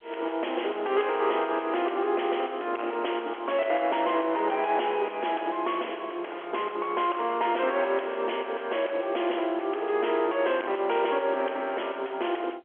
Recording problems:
telephone audio; 280 Hz to 3.3 kHz, G.711
distorted audio; soft clipping, signal-to-distortion ratio 6 dB

